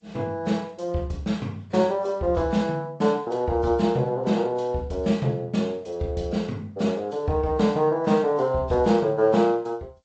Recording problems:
lossy codec; AAC, then G.722, log-spectral distance 2 dB, nothing above 7.3 kHz

